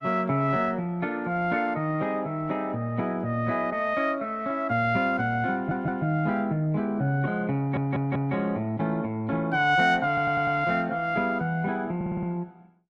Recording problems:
lossy codec; Opus, log-spectral distance 2 dB
stutter; 4 times, first at 5.5 s

